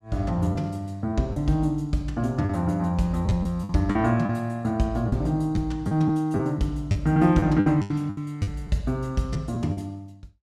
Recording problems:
packet loss; 7% of the sound replaced, filled with the last packet

